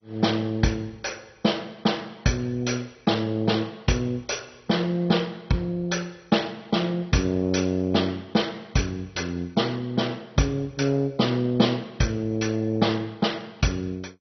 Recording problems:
codec artefacts; MP2, log-spectral distance 4 dB, nothing above 6 kHz

